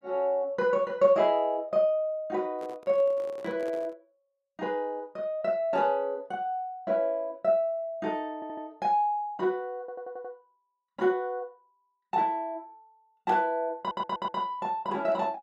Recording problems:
handling noise; from 2.5 to 4 s; peak -11 dB vs average level
audio stuttering; at 8.5 s, at 10 s and at 14 s

